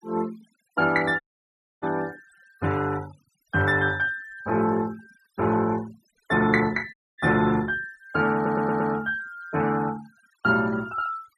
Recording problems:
denoising artefacts; signal-to-artefact ratio 22 dB
dropout; at 1 s for 0.5 s and at 7 s
stutter; at 8.5 s

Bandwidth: 13.5 kHz